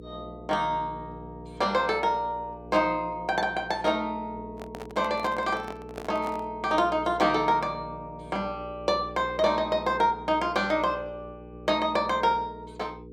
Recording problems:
hum; 60 Hz, harmonics up to 480 Hz, SNR 17 dB
handling noise; from 4.5 to 6.5 s; peak -6 dB vs average level

